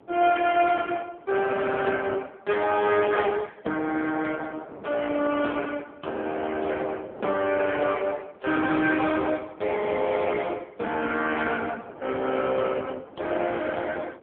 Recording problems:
telephone audio; 260 Hz to 3.3 kHz, AMR-NB
wind on the microphone; below 710 Hz, SNR 21 dB

